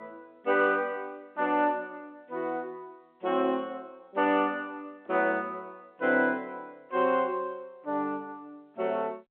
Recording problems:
phone line; 240 Hz to 3.7 kHz, G.711

